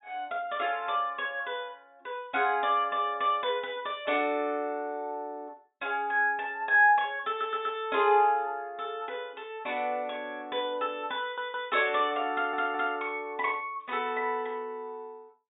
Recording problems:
treble cut off; nothing above 4 kHz
stutter; at 7.5 s, at 11 s and at 12 s

